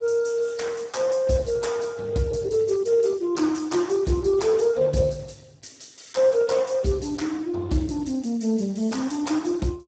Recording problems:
lossy compression; Speex, log-spectral distance 5 dB, nothing above 7.6 kHz

